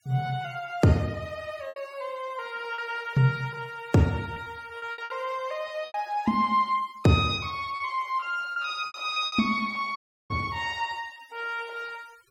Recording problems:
noise reduction artefacts; signal-to-artefact ratio 25 dB
packet loss; 6% of the sound replaced, filled with repeated pitch periods
dropout; at 10 s

